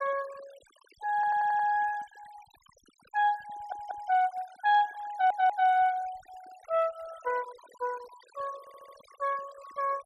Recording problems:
noise reduction artefacts; signal-to-artefact ratio 23 dB
stutter; 4 times, first at 1 s

